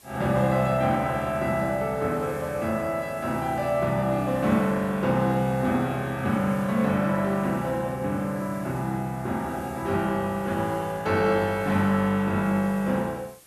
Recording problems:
background hiss; slope -1 dB per octave, SNR 24 dB

